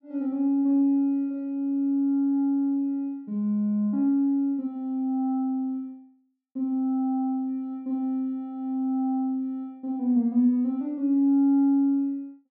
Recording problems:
none

